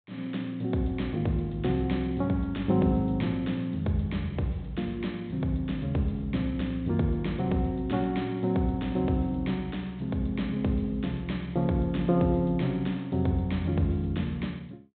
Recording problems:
treble cut off; nothing above 4 kHz

